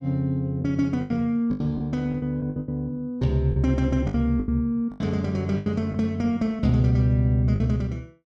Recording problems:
packet loss; 10% of the sound replaced, filled with the last packet

